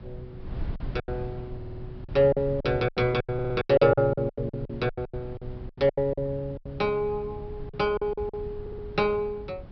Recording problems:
low-pass filter; nothing above 5.5 kHz
wind on the microphone; below 140 Hz, SNR 14 dB
lost packets; 16% of the sound replaced, filled with silence
audio stuttering; at 1.5 s, at 3.5 s and at 8.5 s

